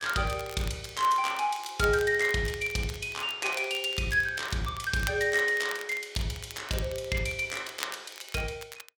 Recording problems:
crackling; vinyl, SNR 16 dB

